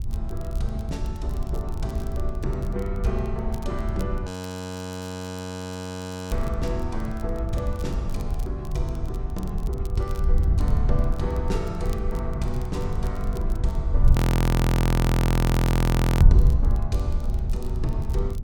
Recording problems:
wind on the microphone; below 120 Hz, SNR -5 dB
crackle; vinyl, SNR 20 dB
frozen audio; at 4.5 s for 2 s and at 14 s for 2 s

